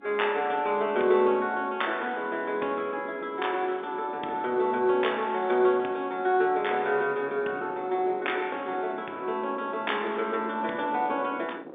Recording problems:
phone line; 240 Hz to 3.6 kHz, G.711
wind noise; below 560 Hz, SNR 19 dB

